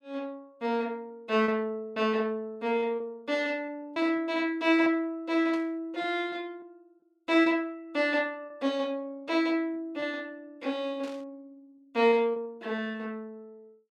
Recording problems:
lost packets; 5% of the sound replaced, filled with repeated pitch periods
static burst; at 5.5 s and at 11 s; peak -13 dB vs average level

